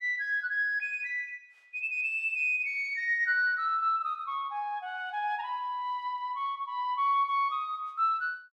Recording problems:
none

